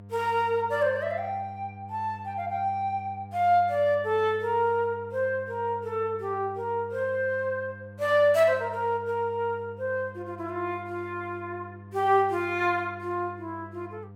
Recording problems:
hum; 50 Hz, harmonics up to 900 Hz, SNR 18 dB

